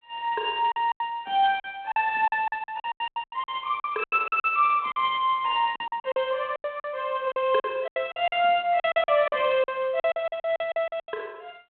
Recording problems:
phone line; 300 Hz to 3.5 kHz, G.726
lost packets; 17% of the sound replaced, filled with silence

